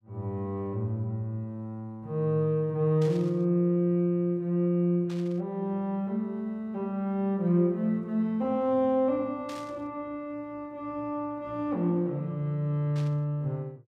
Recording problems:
static burst; 4 times, first at 3 s; peak -12 dB vs average level

